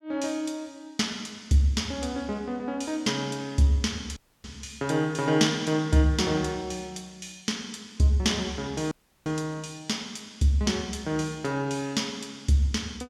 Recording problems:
audio cutting out; at 4 s and at 9 s

